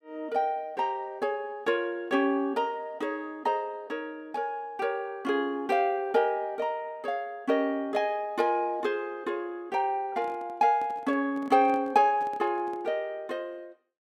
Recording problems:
handling noise; from 10 to 13 s; peak -11 dB vs average level

